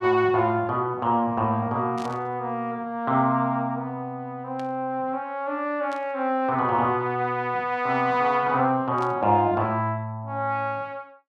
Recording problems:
burst of static; 4 times, first at 2 s; peak -13 dB vs average level

